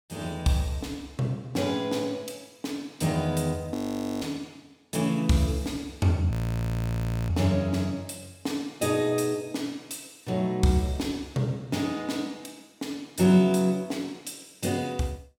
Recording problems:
audio freezing; at 3.5 s and at 6.5 s for 1 s

